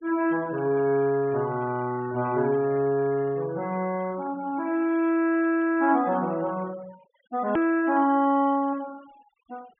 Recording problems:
low-pass filter; nothing above 3.4 kHz
noise reduction artefacts; signal-to-artefact ratio 24 dB
edit click; at 7.5 s

